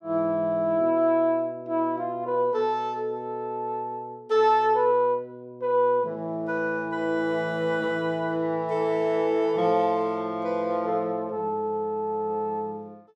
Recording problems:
none

